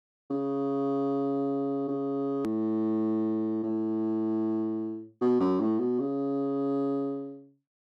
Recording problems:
hard cut with a click; at 2.5 s

